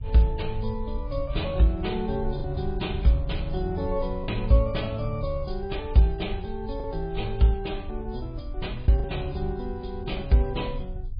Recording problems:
lossy compression; MP3, log-spectral distance 3 dB, nothing above 4.1 kHz
rumble; below 66 Hz, SNR 9 dB
lost packets; 1.8% of the sound replaced, filled with the last packet

